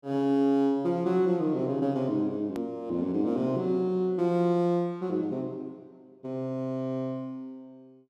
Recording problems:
edit click; at 2.5 s

